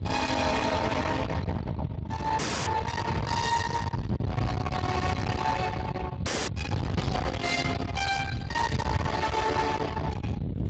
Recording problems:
codec artefacts; Speex, log-spectral distance 4 dB, nothing above 7.3 kHz
distorted audio; soft clipping, signal-to-distortion ratio 7 dB
wind on the microphone; below 940 Hz, SNR 3 dB
audio freezing; at 2.5 s and at 6.5 s

